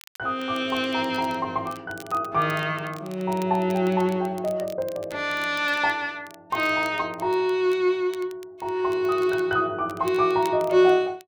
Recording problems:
crackle; vinyl, SNR 24 dB

